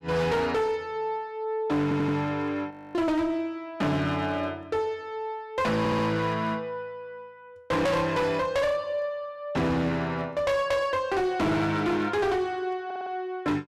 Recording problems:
distortion; hard clipping, uneven, signal-to-distortion ratio 7 dB
audio stuttering; at 2 s, at 6 s and at 13 s
frozen audio; at 2.5 s

